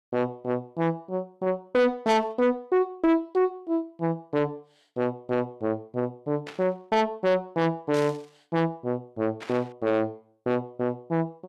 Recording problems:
distortion; soft clipping, signal-to-distortion ratio 7 dB
burst of static; 4 times, first at 2 s; peak -8 dB vs average level

